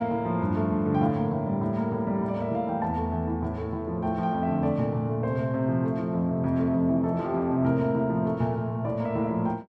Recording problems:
none

